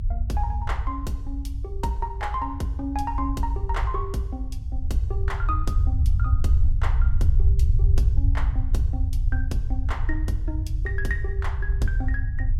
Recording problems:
low-frequency rumble; below 78 Hz, SNR -7 dB

